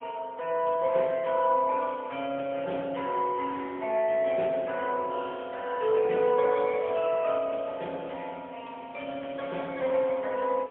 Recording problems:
phone line; 260 Hz to 3.3 kHz, AMR-NB, then MP3

